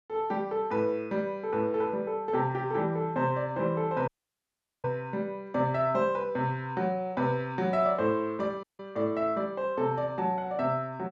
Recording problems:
audio cutting out; at 4 s for 1 s and at 8.5 s

